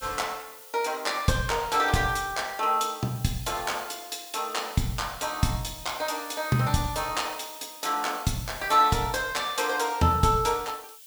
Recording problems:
hiss; SNR 16 dB

